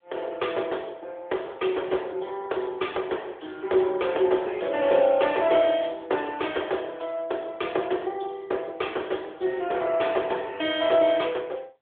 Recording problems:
phone line; 320 Hz to 3.6 kHz, AMR-NB

